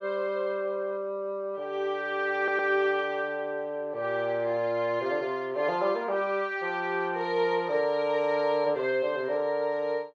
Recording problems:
audio stuttering; at 2.5 s

